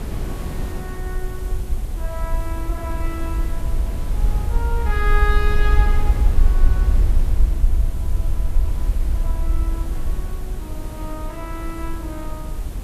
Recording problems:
hiss; SNR 10 dB
low-frequency rumble; below 56 Hz, SNR -8 dB
wind on the microphone; below 350 Hz, SNR 3 dB

